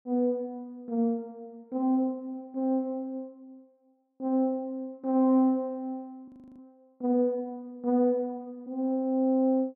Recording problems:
audio freezing; at 6.5 s

